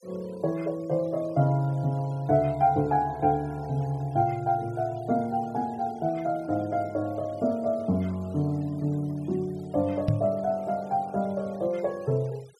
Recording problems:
denoising artefacts; signal-to-artefact ratio 27 dB
knock on the microphone; at 10 s; peak +5 dB vs average level

